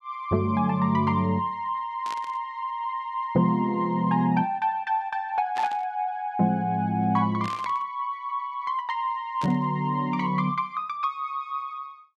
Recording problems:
static burst; 4 times, first at 2 s; peak -8 dB vs average level

